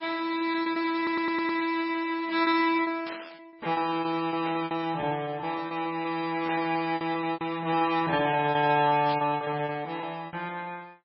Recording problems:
lossy codec; MP3, log-spectral distance 3 dB, nothing above 5.3 kHz
packet loss; 18% of the sound replaced, filled with repeated pitch periods
stutter; at 1 s
static burst; 4 times, first at 3 s; peak -7 dB vs average level

